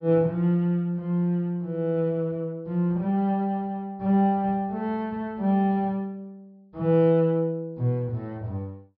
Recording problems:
treble missing; nothing above 5.5 kHz

